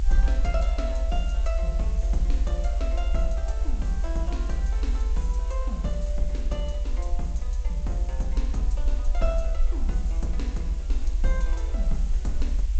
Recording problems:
lossy codec; G.722, log-spectral distance 2 dB, nothing above 7.8 kHz
background hiss; slope -1 dB per octave, SNR 15 dB
rumble; below 58 Hz, strongest tone 44 Hz, SNR -8 dB

